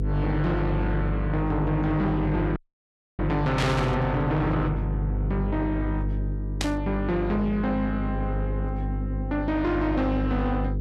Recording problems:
distorted audio; soft clipping, signal-to-distortion ratio 10 dB
hum; 50 Hz, harmonics up to 500 Hz, SNR 3 dB
dropout; at 2.5 s for 0.5 s
static burst; at 3.5 s and at 6.5 s; peak +2 dB vs average level

